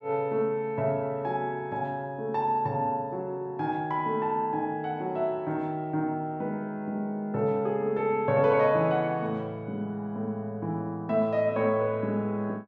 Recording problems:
none

